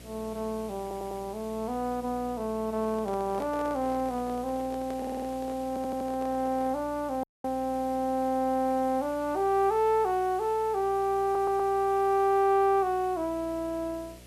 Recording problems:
electrical hum; 60 Hz, harmonics up to 720 Hz, SNR 22 dB
background hiss; slope +1 dB per octave, SNR 23 dB
stutter; 4 times, first at 1 s
microphone handling noise; from 3 to 7 s; peak -9 dB vs average level
dropout; at 7 s

